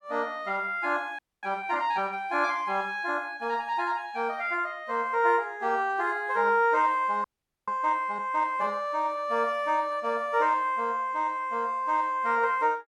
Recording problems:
frozen audio; at 1 s and at 7 s

